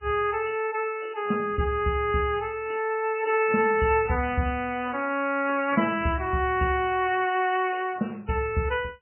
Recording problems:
codec artefacts; MP3, log-spectral distance 4 dB, nothing above 2.7 kHz

